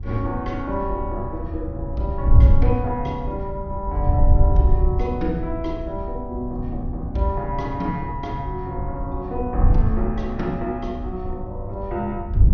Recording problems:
low-pass filter; nothing above 6.3 kHz
wind on the microphone; below 80 Hz, SNR -2 dB

